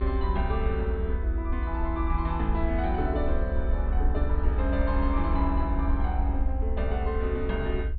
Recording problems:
treble missing; nothing above 4.6 kHz
low-frequency rumble; below 62 Hz, SNR -2 dB

